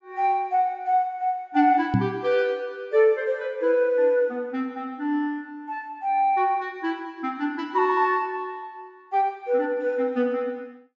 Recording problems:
treble cut off; nothing above 8 kHz
microphone thump; at 2 s; peak +6 dB vs average level

